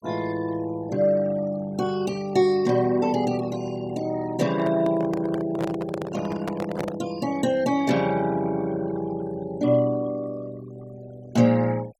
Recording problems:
noise reduction artefacts; signal-to-artefact ratio 19 dB
handling noise; from 4.5 to 7 s; peak -1 dB vs average level

